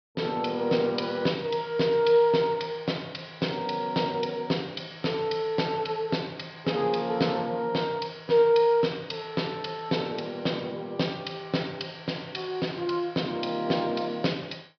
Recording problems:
low-pass filter; nothing above 5.5 kHz

